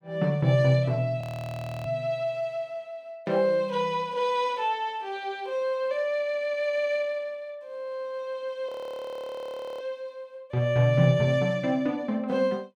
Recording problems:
audio freezing; at 1 s for 0.5 s and at 8.5 s for 1 s

